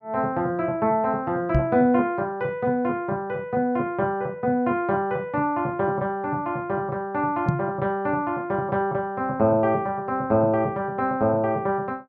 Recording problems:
microphone thump; at 1.5 s and at 7.5 s; peak +6 dB vs average level

